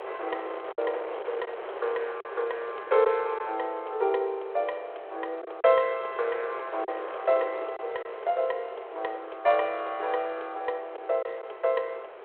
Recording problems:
telephone audio; 370 Hz to 3.4 kHz, G.726
wind on the microphone; below 1 kHz, SNR 12 dB
packet loss; 2% of the sound replaced, filled with silence

